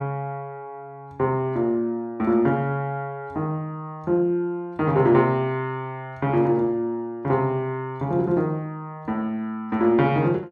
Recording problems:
none

